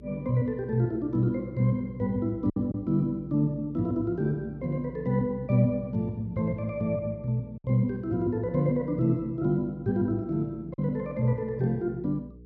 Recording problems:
hum; 60 Hz, harmonics up to 480 Hz, SNR 21 dB
lost packets; 1.5% of the sound replaced, filled with silence

